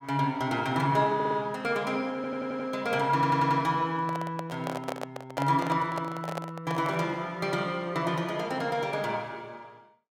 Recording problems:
audio stuttering; at 1 s, at 2 s and at 3 s
handling noise; from 4 to 7 s; peak 0 dB vs average level

